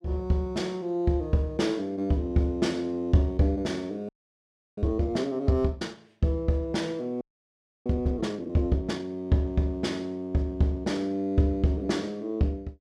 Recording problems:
audio freezing; at 4 s for 0.5 s and at 7 s for 0.5 s

